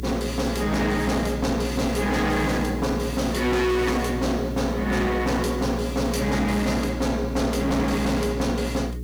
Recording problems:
distorted audio; hard clipping, uneven, signal-to-distortion ratio 6 dB
hum; 60 Hz, harmonics up to 420 Hz, SNR 8 dB
hiss; slope +2 dB per octave, SNR 27 dB

